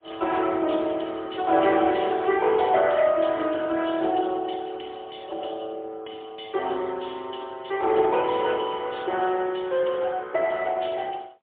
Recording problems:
phone line; 280 Hz to 3.5 kHz, AMR-NB, then MP3

